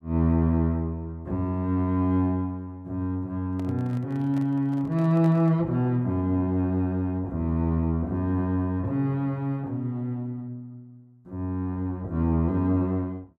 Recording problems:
handling noise; from 3.5 to 5.5 s; peak -10 dB vs average level

